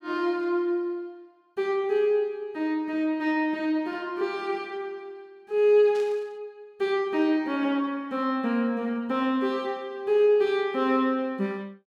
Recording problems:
burst of static; at 6 s; peak -15 dB vs average level

